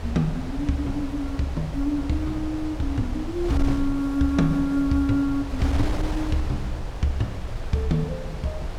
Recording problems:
wind noise; below 120 Hz, SNR 7 dB

